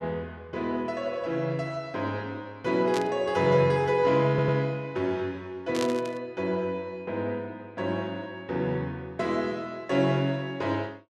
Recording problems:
static burst; at 3 s and at 5.5 s; peak -1 dB vs average level
audio stuttering; at 4.5 s

